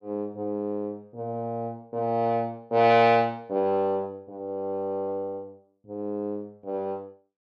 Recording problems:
none

